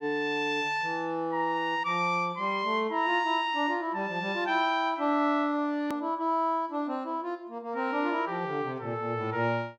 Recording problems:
hard cut with a click; at 6 s

